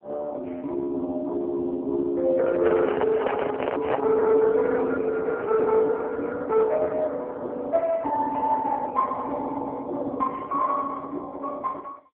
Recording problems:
phone line; 280 Hz to 2.1 kHz, AMR-NB
handling noise; from 2.5 to 4 s; peak +1 dB vs average level

